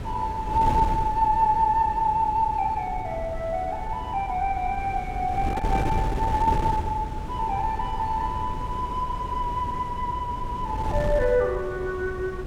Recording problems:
wind on the microphone; below 260 Hz, SNR 7 dB

